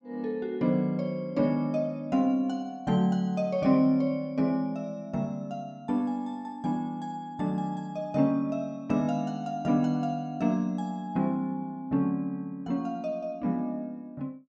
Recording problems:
none

